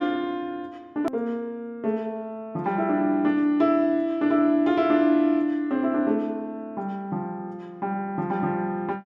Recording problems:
click at an edit; at 1 s

